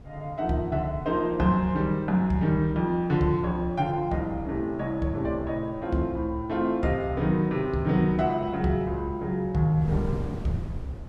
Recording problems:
wind noise; below 200 Hz, SNR 15 dB

